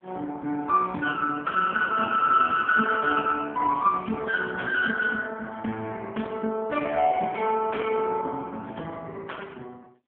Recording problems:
phone line; 170 Hz to 3.4 kHz, AMR-NB

